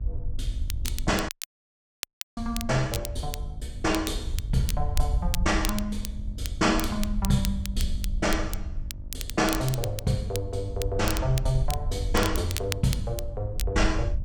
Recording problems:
hum; 50 Hz, harmonics up to 950 Hz, SNR 21 dB
rumble; below 66 Hz, SNR 5 dB
crackle; vinyl, SNR 9 dB
dropout; at 1.5 s for 1 s

